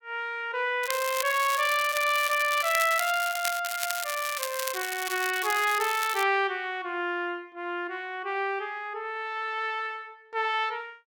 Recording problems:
crackle; from 1 to 3.5 s and from 3.5 to 6 s; loose cable, SNR 6 dB

